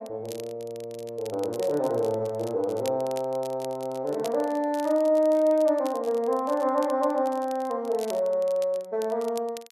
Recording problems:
crackle; vinyl, SNR 21 dB

